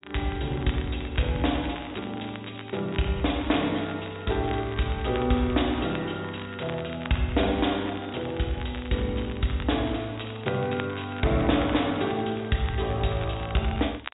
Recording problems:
treble missing; nothing above 4 kHz
crackle; vinyl, SNR 16 dB

